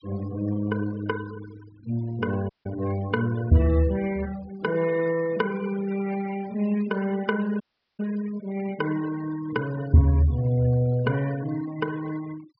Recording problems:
low-pass filter; nothing above 5.5 kHz
denoising artefacts; signal-to-artefact ratio 18 dB
audio cutting out; at 2.5 s and at 7.5 s

